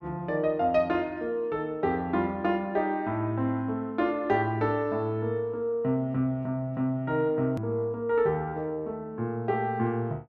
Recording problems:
hard cut with a click; at 7.5 s

